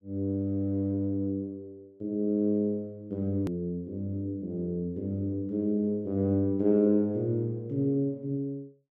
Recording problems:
click at an edit; at 3.5 s

